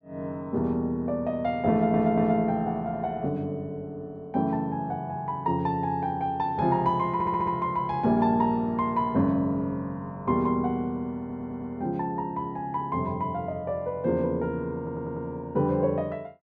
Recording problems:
stutter; 4 times, first at 1.5 s

